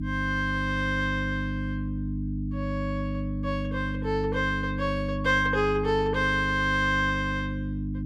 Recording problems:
hum; 50 Hz, harmonics up to 300 Hz, SNR 4 dB

